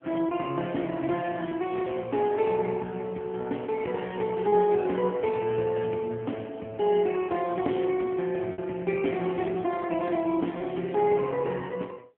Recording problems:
phone line; 190 Hz to 3.3 kHz, AMR-NB
lost packets; 1.2% of the sound replaced, filled with repeated pitch periods

